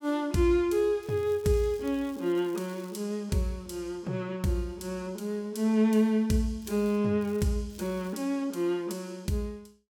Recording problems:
crackle; 4 times, first at 1 s; loose cable, SNR 25 dB

